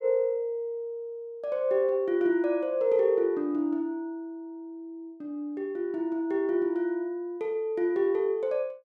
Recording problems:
none

